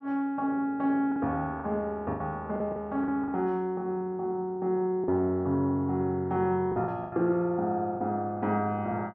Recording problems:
lost packets; 6% of the sound replaced, filled with the last packet

